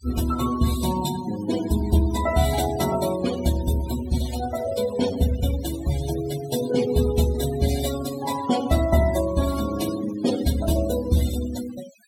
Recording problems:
noise reduction artefacts; signal-to-artefact ratio 11 dB

